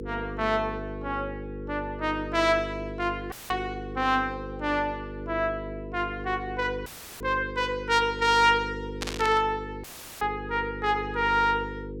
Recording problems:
electrical hum; 50 Hz, harmonics up to 500 Hz, SNR 10 dB
audio cutting out; at 3.5 s, at 7 s and at 10 s; filled with static
static burst; at 3.5 s and at 9 s; peak -1 dB vs average level

